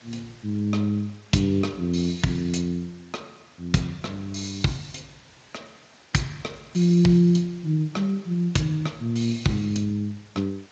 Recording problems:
codec artefacts; Speex, log-spectral distance 6 dB
background hiss; slope -2 dB per octave, SNR 27 dB

